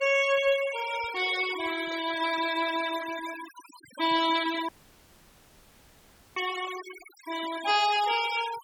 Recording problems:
noise reduction artefacts; signal-to-artefact ratio 12 dB
dropout; at 4.5 s for 1.5 s

